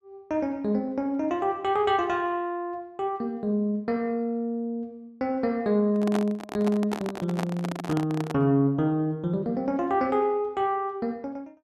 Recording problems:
microphone handling noise; from 6 to 8.5 s; peak -1 dB vs average level

